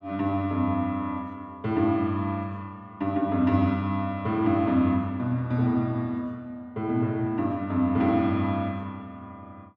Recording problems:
none

